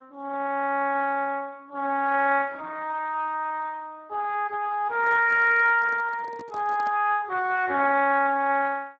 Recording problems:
codec artefacts; Speex, log-spectral distance 3 dB
handling noise; from 5 to 7 s; peak -13 dB vs average level

